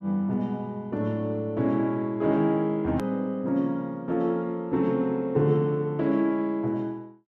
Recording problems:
hard cut with a click; at 3 s

